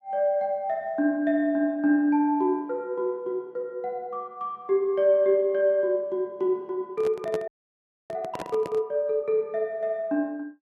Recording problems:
microphone handling noise; from 7 to 9 s; peak -4 dB vs average level
frozen audio; at 7.5 s for 0.5 s

